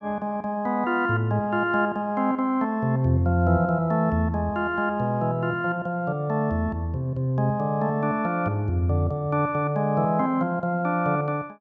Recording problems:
none

